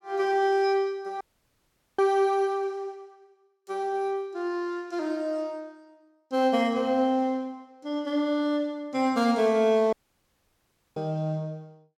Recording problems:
audio cutting out; at 1 s for 1 s and at 10 s for 1 s

